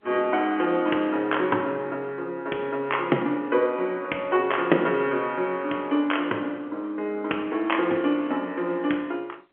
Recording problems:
telephone audio; 240 Hz to 3.3 kHz, G.711

